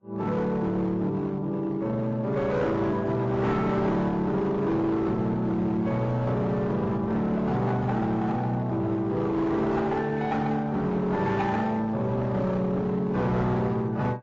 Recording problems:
lossy codec; AAC, then AAC, log-spectral distance 2 dB, nothing above 7.3 kHz
distortion; hard clipping, uneven, signal-to-distortion ratio 11 dB

